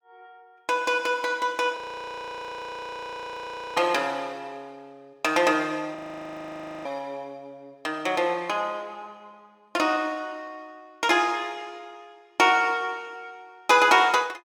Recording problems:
audio freezing; at 2 s for 2 s and at 6 s for 1 s

